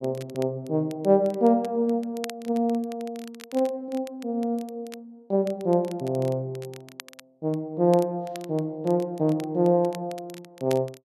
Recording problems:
crackle; vinyl, SNR 21 dB

